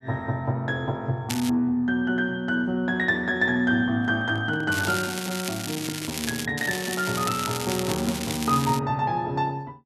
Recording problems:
crackle; at 1.5 s, from 4.5 to 6.5 s and from 6.5 to 9 s; loose cable, SNR 7 dB
handling noise; from 4 to 6.5 s; peak -9 dB vs average level

